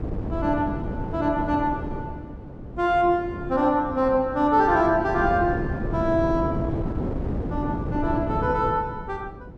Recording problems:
wind on the microphone; below 330 Hz, SNR 7 dB

